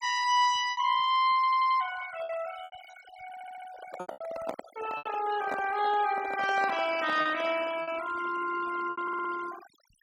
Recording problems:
denoising artefacts; signal-to-artefact ratio 15 dB
packet loss; 7% of the sound replaced, filled with repeated pitch periods
audio stuttering; at 1.5 s, at 3.5 s and at 9 s
handling noise; from 3.5 to 8 s; peak -3 dB vs average level

